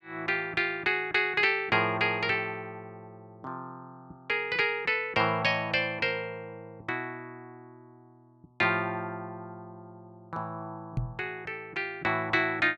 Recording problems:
microphone bump; at 11 s; peak +1 dB vs average level

